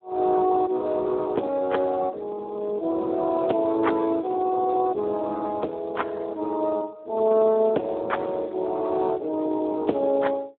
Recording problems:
phone line; 240 Hz to 3.8 kHz, Speex

